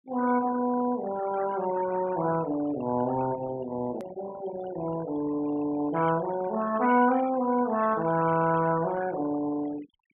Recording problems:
treble cut off; nothing above 3.5 kHz
denoising artefacts; signal-to-artefact ratio 13 dB
click at an edit; at 4 s

